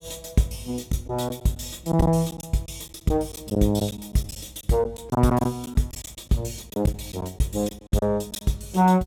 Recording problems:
lost packets; 8% of the sound replaced, filled with silence

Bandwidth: 17.5 kHz